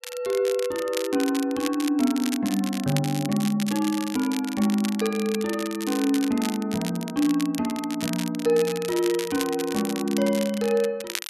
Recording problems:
crackle; vinyl, SNR 10 dB

